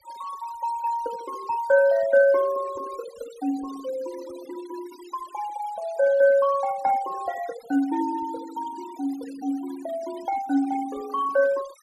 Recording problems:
denoising artefacts; signal-to-artefact ratio 20 dB

